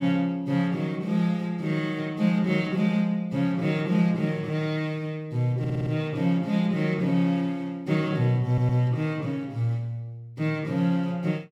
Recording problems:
stutter; at 5.5 s and at 8.5 s

